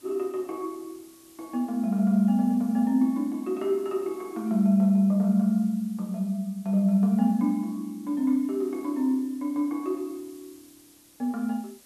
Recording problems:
hiss; SNR 28 dB

